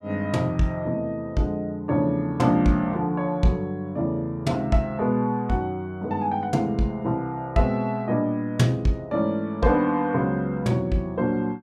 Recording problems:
none

